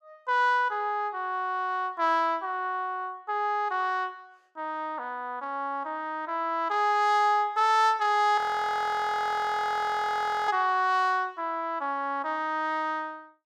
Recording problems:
frozen audio; at 8.5 s for 2 s

